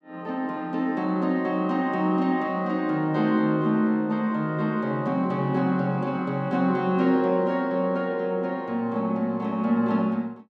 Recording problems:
none

